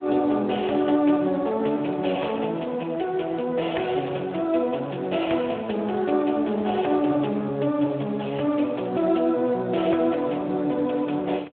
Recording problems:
telephone audio; 240 Hz to 3.3 kHz, Speex

